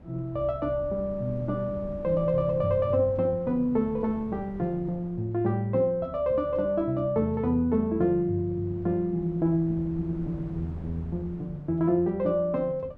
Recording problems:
wind on the microphone; below 270 Hz, SNR 18 dB

